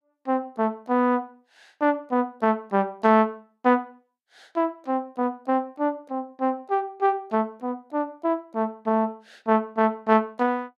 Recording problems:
none

